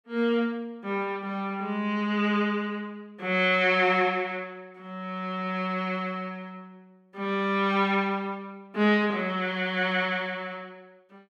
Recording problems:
none

